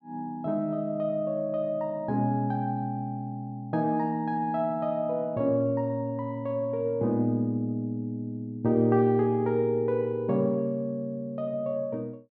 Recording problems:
none

